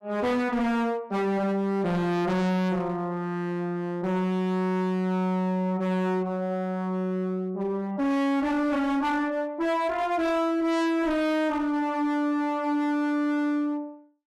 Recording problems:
distortion; hard clipping, uneven, signal-to-distortion ratio 6 dB

